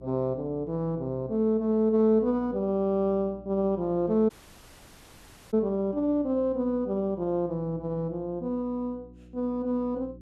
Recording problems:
hum; 60 Hz, harmonics up to 360 Hz, SNR 22 dB
dropout; at 4.5 s for 1 s

